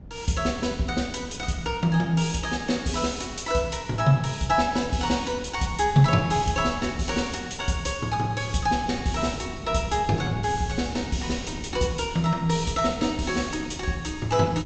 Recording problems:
treble cut off; nothing above 8 kHz
wind on the microphone; below 200 Hz, SNR 15 dB

